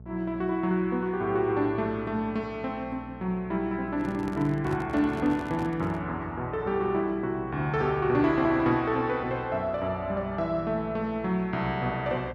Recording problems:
hum; 60 Hz, harmonics up to 660 Hz, SNR 18 dB
handling noise; from 4 to 6 s; peak -3 dB vs average level

